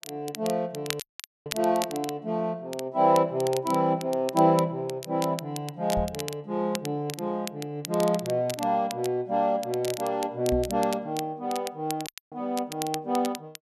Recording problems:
crackle; vinyl, SNR 12 dB
dropout; at 1 s and at 12 s
microphone thump; at 6 s and at 11 s; peak -1 dB vs average level

